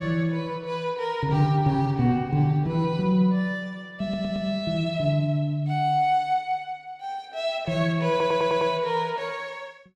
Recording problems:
stutter; at 4 s and at 8 s

